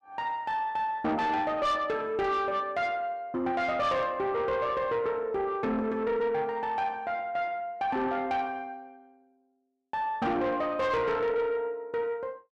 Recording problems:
distortion; soft clipping, signal-to-distortion ratio 11 dB

